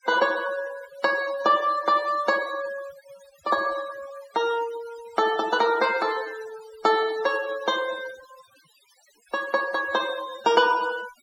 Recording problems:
noise reduction artefacts; signal-to-artefact ratio 17 dB

